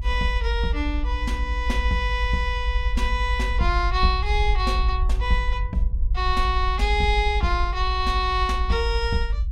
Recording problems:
rumble; below 60 Hz, strongest tone 48 Hz, SNR 1 dB

